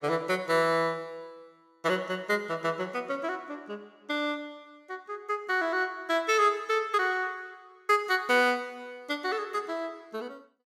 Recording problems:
none

